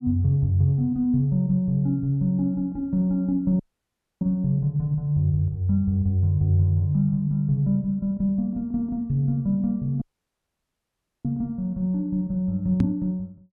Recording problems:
dropout; at 3.5 s for 0.5 s and at 10 s for 1 s
knock on the microphone; at 13 s; peak +4 dB vs average level

